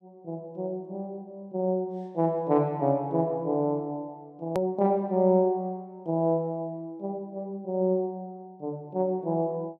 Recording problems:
hard cut with a click; at 4.5 s

